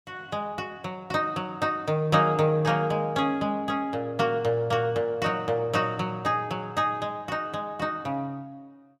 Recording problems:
none

